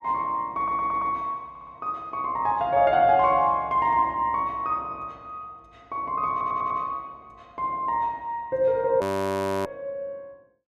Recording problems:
stutter; at 0.5 s, at 1.5 s and at 6.5 s
frozen audio; at 9 s for 0.5 s

